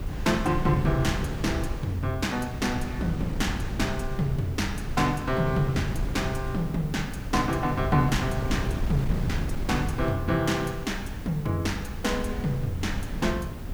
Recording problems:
hiss; slope +1 dB per octave, SNR 25 dB
wind noise; below 160 Hz, SNR 5 dB

